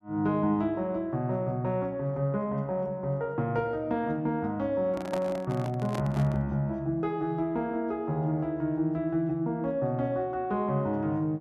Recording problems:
handling noise; from 5 to 6.5 s; peak -2 dB vs average level

